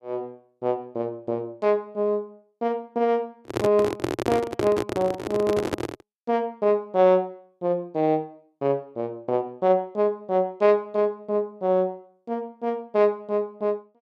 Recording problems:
microphone handling noise; from 3.5 to 6 s; peak +3 dB vs average level

